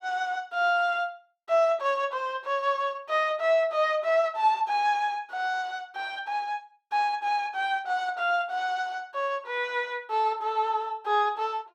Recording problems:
none

